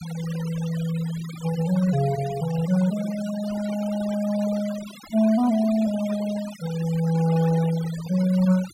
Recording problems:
noise reduction artefacts; signal-to-artefact ratio 16 dB

